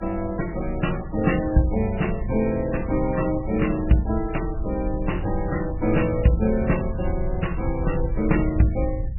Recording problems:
codec artefacts; MP3, log-spectral distance 4 dB, nothing above 2.9 kHz
low-frequency rumble; below 80 Hz, SNR 8 dB

